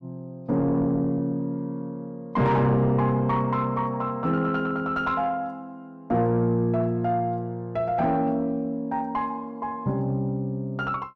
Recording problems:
distorted audio; soft clipping, signal-to-distortion ratio 10 dB

